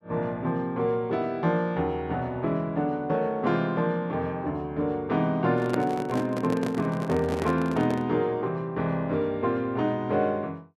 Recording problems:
handling noise; from 5.5 to 8 s; peak 0 dB vs average level

